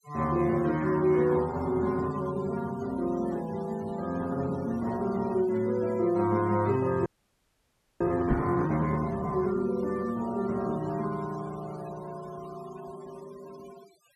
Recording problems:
denoising artefacts; signal-to-artefact ratio 21 dB
audio freezing; at 7 s for 1 s
microphone thump; at 8.5 s; peak +5 dB vs average level

